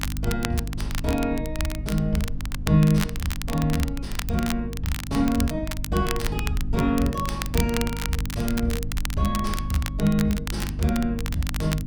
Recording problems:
hum; 50 Hz, harmonics up to 300 Hz, SNR 7 dB
rumble; below 56 Hz, strongest tone 22 Hz, SNR 11 dB
crackling; vinyl, SNR 9 dB

